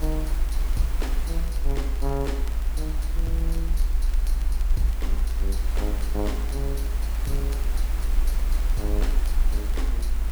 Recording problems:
hiss; slope -4 dB per octave, SNR 5 dB
rumble; below 54 Hz, strongest tone 32 Hz, SNR -7 dB
crackling; vinyl, SNR 18 dB

